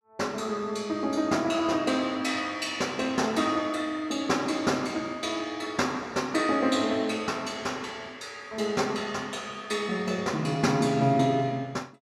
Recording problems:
none

